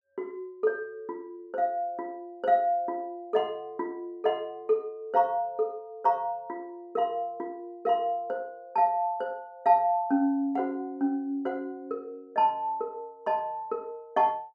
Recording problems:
none

